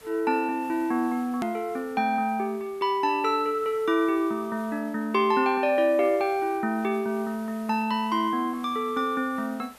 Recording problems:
hiss; slope -3 dB per octave, SNR 25 dB
hard cut with a click; at 1.5 s

